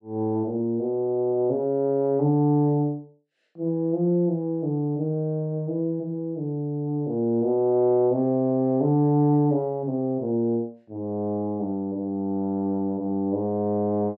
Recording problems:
none

